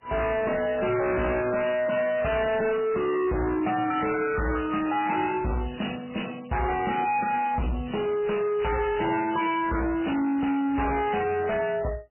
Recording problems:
lossy codec; MP3, then MP3, log-spectral distance 6 dB, nothing above 2.9 kHz
distorted audio; hard clipping, signal-to-distortion ratio 6 dB

